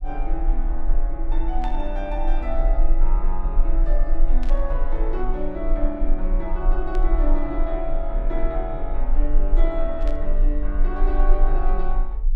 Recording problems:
low-frequency rumble; below 32 Hz, strongest tone 22 Hz, SNR -5 dB
static burst; 4 times, first at 1.5 s; peak -6 dB vs average level

